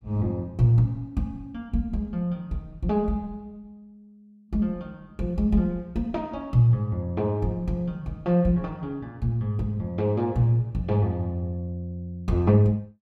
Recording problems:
none

